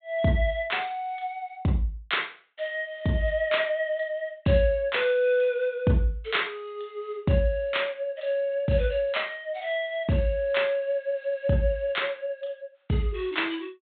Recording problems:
treble missing; nothing above 4 kHz

